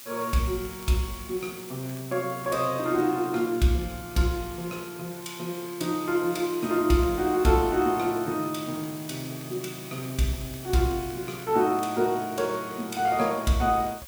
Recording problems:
background hiss; slope +1 dB per octave, SNR 15 dB
crackling; vinyl, SNR 29 dB

